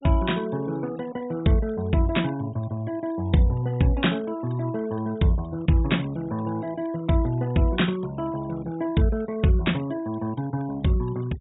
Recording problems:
treble cut off; nothing above 4 kHz
noise reduction artefacts; signal-to-artefact ratio 23 dB

